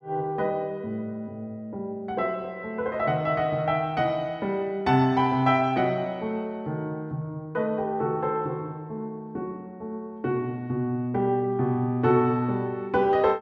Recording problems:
none

